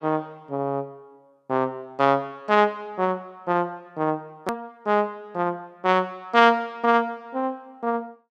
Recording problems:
click at an edit; at 4.5 s

